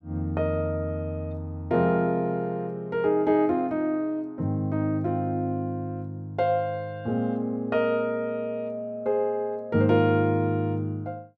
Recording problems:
none

